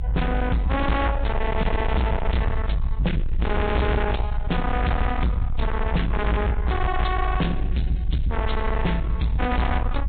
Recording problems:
treble cut off; nothing above 3.9 kHz
lossy compression; Vorbis, log-spectral distance 2 dB
distortion; soft clipping, signal-to-distortion ratio 6 dB
low-frequency rumble; below 76 Hz, SNR 2 dB

